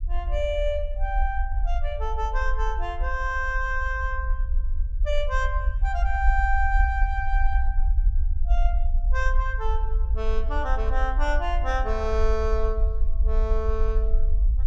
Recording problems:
low-frequency rumble; below 52 Hz, SNR -2 dB

